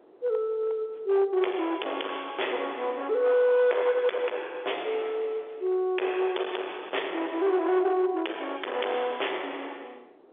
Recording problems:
phone line; 320 Hz to 3.5 kHz, G.711
distorted audio; hard clipping, signal-to-distortion ratio 7 dB
wind on the microphone; below 1.2 kHz, SNR 23 dB

